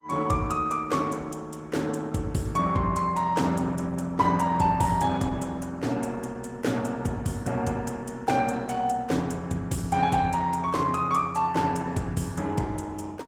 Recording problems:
lossy codec; Opus, log-spectral distance 3 dB, nothing above 19 kHz

